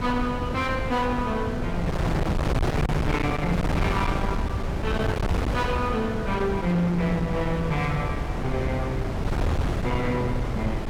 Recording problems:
distortion; hard clipping, signal-to-distortion ratio 6 dB
electrical hum; 50 Hz, harmonics up to 1.1 kHz, SNR 21 dB
wind noise; below 420 Hz, SNR 1 dB

